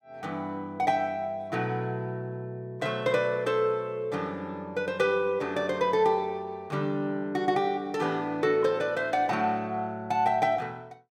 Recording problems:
none

